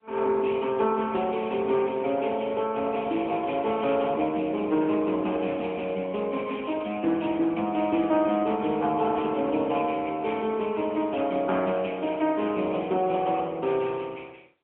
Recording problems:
phone line; 260 Hz to 3.2 kHz, AMR-NB, then MP3

